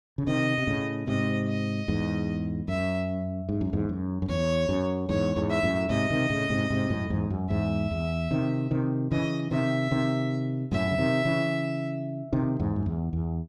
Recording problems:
none

